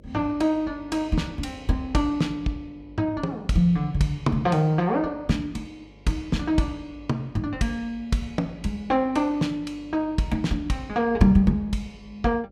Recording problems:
hum; 50 Hz, harmonics up to 600 Hz, SNR 25 dB

